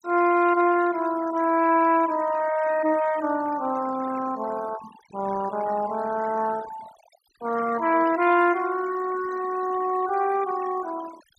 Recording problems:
noise reduction artefacts; signal-to-artefact ratio 16 dB

